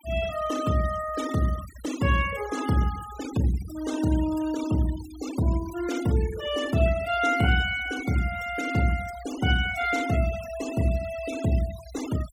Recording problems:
noise reduction artefacts; signal-to-artefact ratio 15 dB

